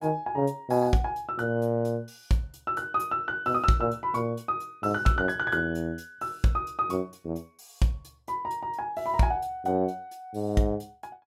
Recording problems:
none

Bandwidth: 16 kHz